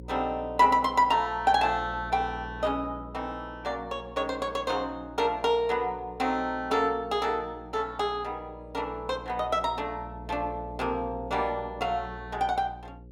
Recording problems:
hum; 60 Hz, harmonics up to 540 Hz, SNR 17 dB

